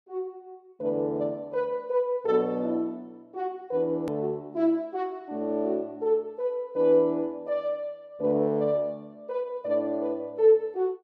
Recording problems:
hard cut with a click; at 4 s

